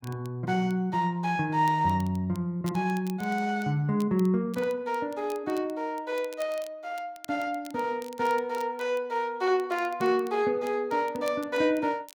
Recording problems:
crackling; vinyl, SNR 23 dB

